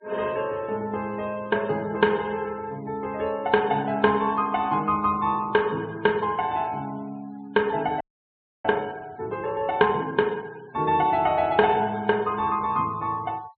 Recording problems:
treble cut off; nothing above 4.2 kHz
noise reduction artefacts; signal-to-artefact ratio 26 dB
frozen audio; at 8 s for 0.5 s

